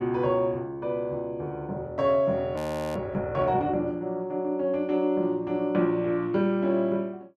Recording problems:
audio freezing; at 2.5 s

